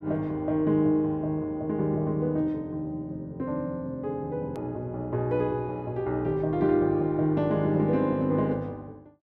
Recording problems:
click at an edit; at 4.5 s

